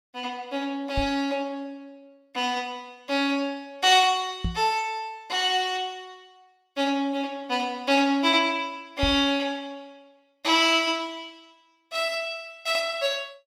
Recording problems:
microphone bump; at 1 s, at 4.5 s and at 9 s; peak 0 dB vs average level

